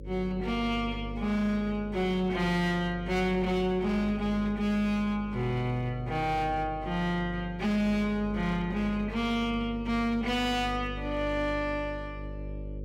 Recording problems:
distortion; hard clipping, signal-to-distortion ratio 12 dB
electrical hum; 50 Hz, harmonics up to 550 Hz, SNR 11 dB

